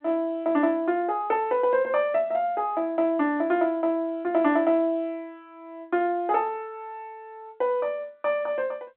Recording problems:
phone line; 190 Hz to 4 kHz, G.711

